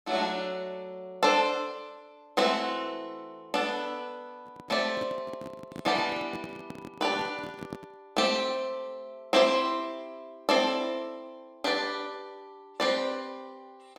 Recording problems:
handling noise; from 4.5 to 8 s; peak -5 dB vs average level

